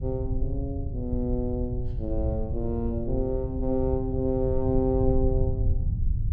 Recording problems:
low-frequency rumble; below 98 Hz, SNR 2 dB

